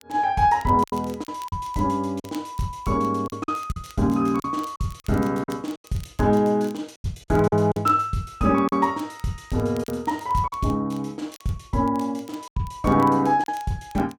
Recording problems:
crackle; vinyl, SNR 25 dB
lost packets; 6% of the sound replaced, filled with silence

